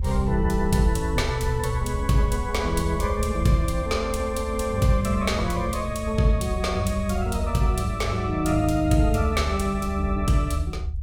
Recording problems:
rumble; below 76 Hz, SNR 6 dB

